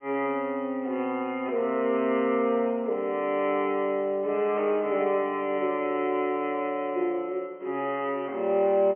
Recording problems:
telephone audio; 280 Hz to 3.4 kHz, G.711

